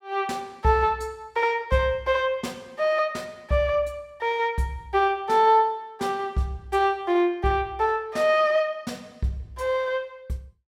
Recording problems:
none

